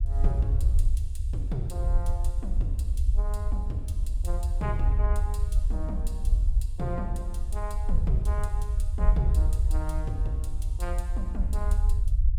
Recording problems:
low-frequency rumble; below 64 Hz, SNR -9 dB

